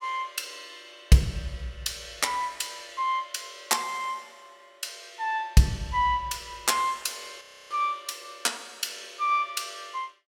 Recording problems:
audio freezing; at 7.5 s

